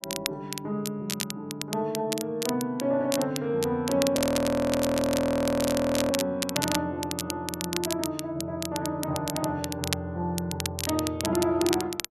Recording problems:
crackle; vinyl, SNR 6 dB
audio freezing; at 4 s for 2 s

